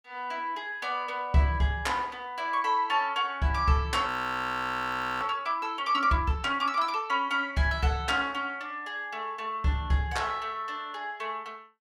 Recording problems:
audio freezing; at 4 s for 1 s

